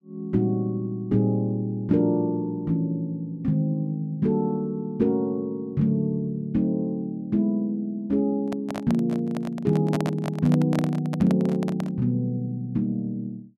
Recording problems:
handling noise; from 8.5 to 12 s; peak -1 dB vs average level

